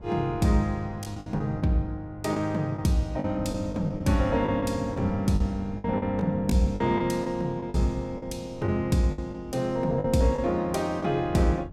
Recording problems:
wind on the microphone; below 210 Hz, SNR 14 dB
packet loss; 8% of the sound replaced, filled with the last packet

